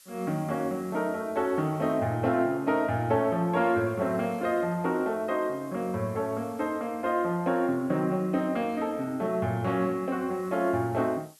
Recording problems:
background hiss; slope +3 dB per octave, SNR 27 dB

